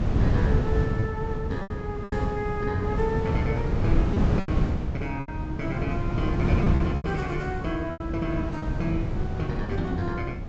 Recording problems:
low-pass filter; nothing above 8 kHz
hum; 60 Hz, harmonics up to 660 Hz, SNR 19 dB
wind on the microphone; below 190 Hz, SNR -3 dB
lost packets; 6% of the sound replaced, filled with repeated pitch periods

